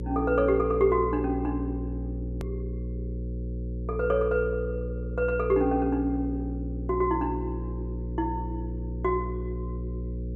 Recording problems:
mains hum; 60 Hz, harmonics up to 540 Hz, SNR 6 dB
click at an edit; at 2.5 s

